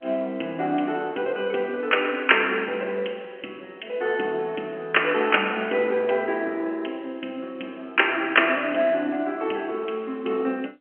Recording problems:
phone line; 240 Hz to 3.2 kHz, G.711

